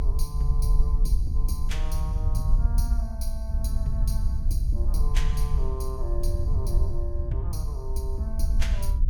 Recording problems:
low-frequency rumble; below 58 Hz, SNR -8 dB
wind noise; below 86 Hz, SNR -3 dB

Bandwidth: 17.5 kHz